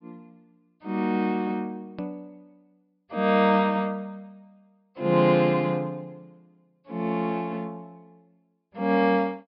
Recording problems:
treble missing; nothing above 5.2 kHz
hard cut with a click; at 2 s

